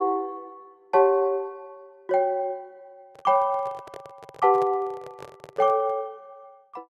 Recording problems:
microphone handling noise; from 3 to 6 s; peak -10 dB vs average level

